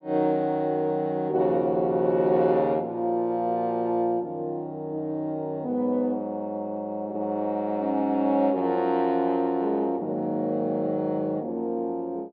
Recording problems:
treble cut off; nothing above 5.5 kHz

